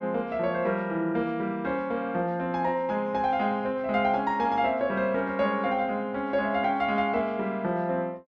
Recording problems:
none

